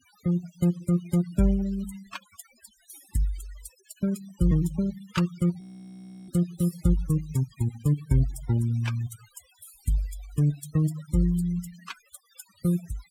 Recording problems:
noise reduction artefacts; signal-to-artefact ratio 18 dB
audio freezing; at 5.5 s for 0.5 s

